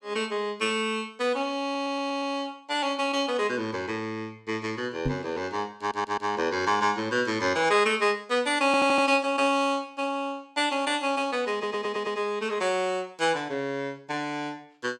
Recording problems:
audio stuttering; 4 times, first at 1.5 s
microphone bump; at 5 s; peak +2 dB vs average level

